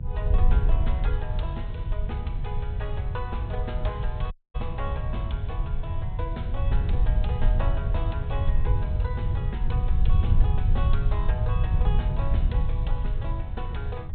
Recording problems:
treble cut off; nothing above 4 kHz
hum; 50 Hz, harmonics up to 750 Hz, SNR 13 dB
rumble; below 100 Hz, SNR -6 dB
wind noise; below 66 Hz, SNR -7 dB
dropout; at 4.5 s

